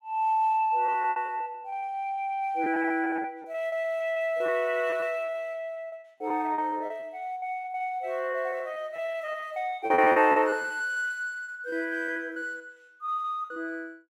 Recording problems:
lost packets; 15% of the sound replaced, filled with repeated pitch periods

